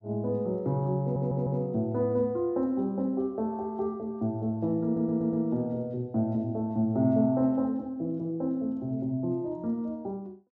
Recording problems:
audio stuttering; at 1 s and at 5 s

